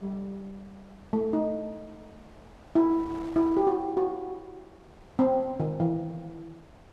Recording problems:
wind noise; below 830 Hz, SNR 23 dB

